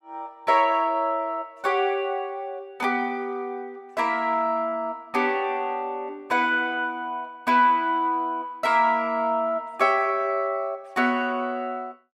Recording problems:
none

